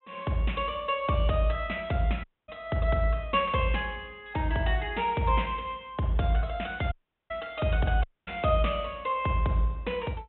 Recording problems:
low-pass filter; nothing above 3.7 kHz
audio cutting out; at 2 s, at 7 s and at 8 s

